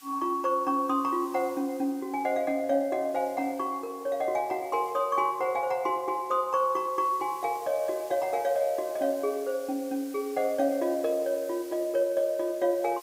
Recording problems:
background hiss; slope +3 dB per octave, SNR 21 dB

